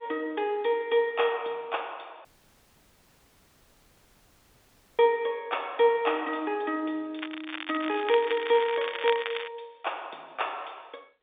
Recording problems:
phone line; 280 Hz to 3.7 kHz, G.711
dropout; at 2.5 s for 2.5 s
crackle; from 7 to 9.5 s; loose cable, SNR 8 dB

